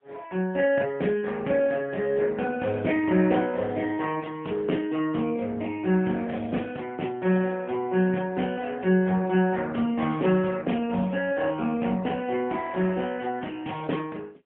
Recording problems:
phone line; 190 Hz to 3.2 kHz, AMR-NB, then MP3

